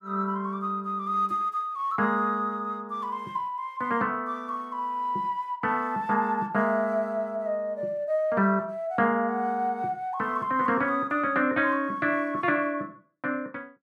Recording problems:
none

